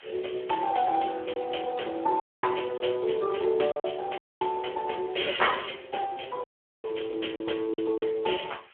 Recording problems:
phone line; 280 Hz to 3.3 kHz, Speex
hiss; SNR 22 dB
lost packets; 3% of the sound replaced, filled with silence
dropout; at 2 s, at 4 s and at 6.5 s

